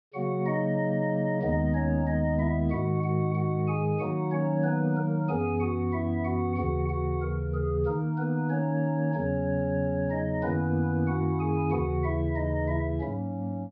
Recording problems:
treble missing; nothing above 5.5 kHz

